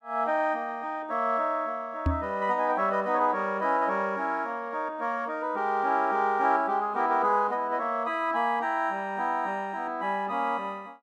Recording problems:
microphone thump; at 2 s; peak +4 dB vs average level

